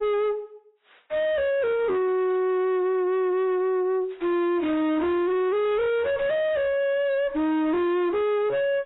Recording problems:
lossy codec; AAC, log-spectral distance 2 dB, nothing above 3.8 kHz
distorted audio; soft clipping, signal-to-distortion ratio 5 dB

